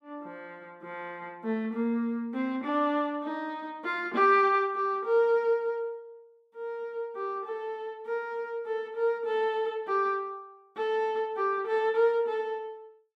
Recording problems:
none

